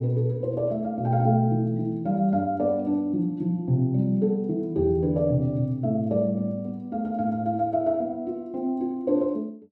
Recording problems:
none

